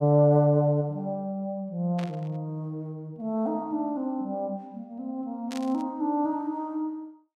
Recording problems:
burst of static; at 2 s and at 5.5 s; peak -8 dB vs average level

